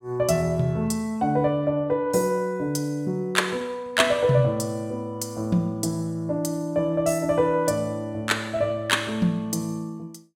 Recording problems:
none

